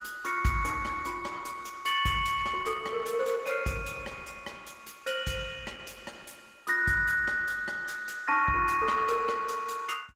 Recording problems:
lossy compression; Opus, log-spectral distance 5 dB

